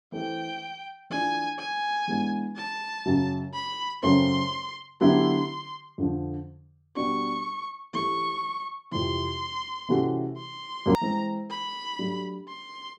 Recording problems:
click at an edit; at 11 s

